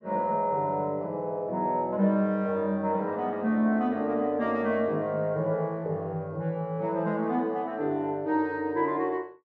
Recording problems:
none

